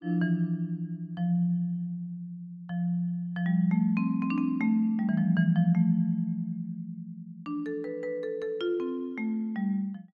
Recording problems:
none

